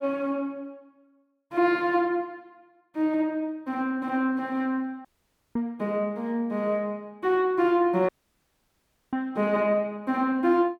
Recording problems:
audio cutting out; at 5 s for 0.5 s and at 8 s for 1 s

